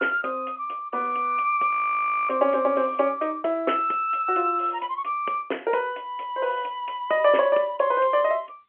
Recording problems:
phone line; 300 Hz to 3.1 kHz, G.711
frozen audio; at 1.5 s for 0.5 s

